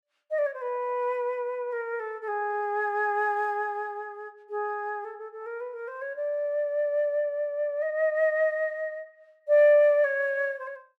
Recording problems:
none

